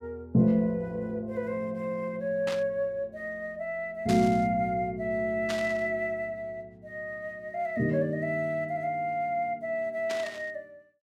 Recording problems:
burst of static; 4 times, first at 2.5 s; peak -2 dB vs average level

